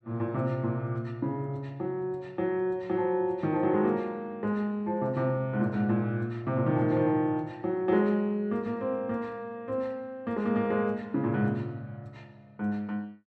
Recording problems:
none

